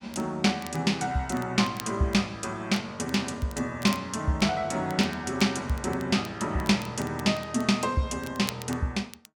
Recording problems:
crackling; vinyl, SNR 19 dB

